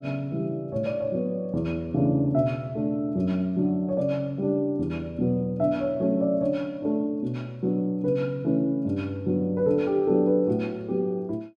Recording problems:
none

